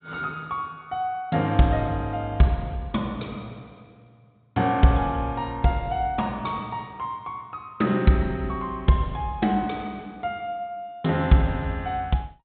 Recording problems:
treble cut off; nothing above 4 kHz

